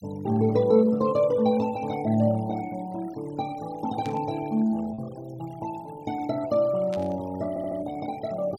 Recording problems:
denoising artefacts; signal-to-artefact ratio 20 dB
lost packets; 1% of the sound replaced, filled with repeated pitch periods
burst of static; at 4 s and at 7 s; peak -12 dB vs average level
stutter; at 7.5 s

